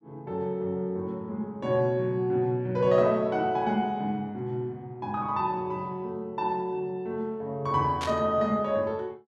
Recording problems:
burst of static; at 8 s; peak -3 dB vs average level

